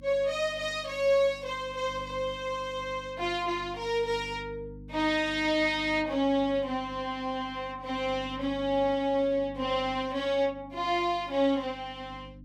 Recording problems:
electrical hum; 50 Hz, harmonics up to 300 Hz, SNR 19 dB

